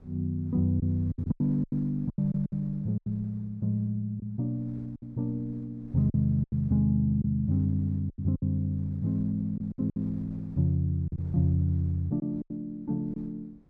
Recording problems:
wind on the microphone; below 180 Hz, SNR 25 dB
lost packets; 9% of the sound replaced, filled with silence

